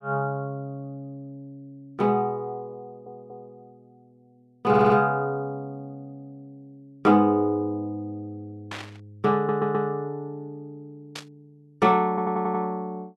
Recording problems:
stutter; 4 times, first at 3 s
burst of static; at 8.5 s and at 11 s; peak -7 dB vs average level

